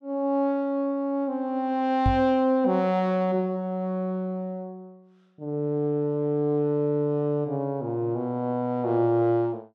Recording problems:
microphone bump; at 2 s; peak +3 dB vs average level

